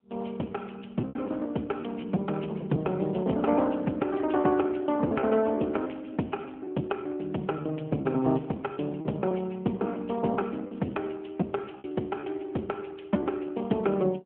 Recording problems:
phone line; 150 Hz to 3.6 kHz, AMR-NB
packet loss; 8% of the sound replaced, filled with repeated pitch periods

